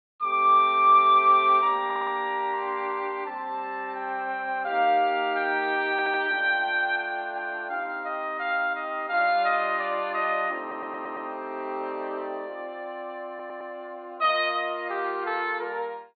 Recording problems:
treble missing; nothing above 4.5 kHz
stutter; 4 times, first at 2 s

